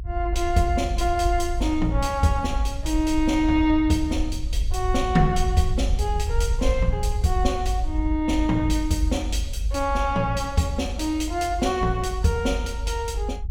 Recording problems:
low-frequency rumble; below 68 Hz, strongest tone 48 Hz, SNR 4 dB

